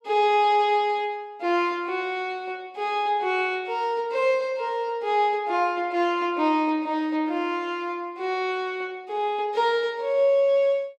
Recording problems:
none

